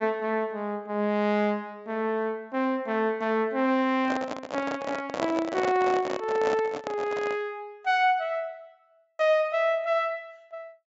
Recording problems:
treble missing; nothing above 8 kHz
microphone handling noise; from 4 to 7.5 s; peak +1 dB vs average level

